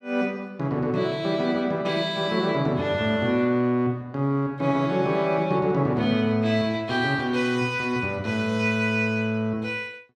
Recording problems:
none

